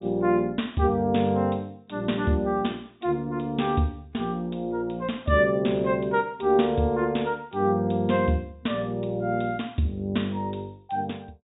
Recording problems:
low-pass filter; nothing above 4 kHz

